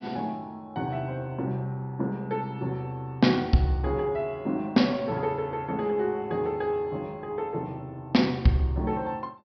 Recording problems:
low-pass filter; nothing above 5.5 kHz

